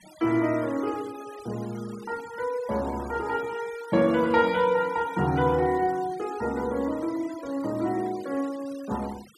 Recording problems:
noise reduction artefacts; signal-to-artefact ratio 20 dB

